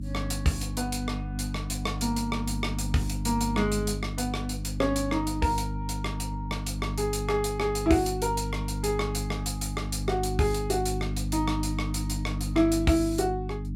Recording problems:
hum; 50 Hz, harmonics up to 300 Hz, SNR 4 dB

